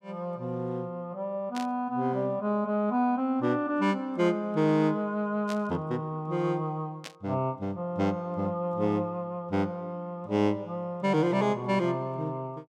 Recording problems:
static burst; at 1.5 s, at 5.5 s and at 7 s; peak -6 dB vs average level

